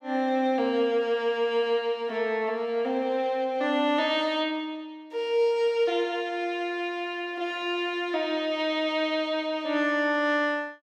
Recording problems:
none

